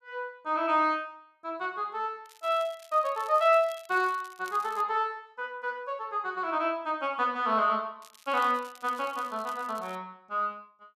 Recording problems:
crackle; from 2.5 to 5 s and from 8 to 10 s; loose cable, SNR 23 dB

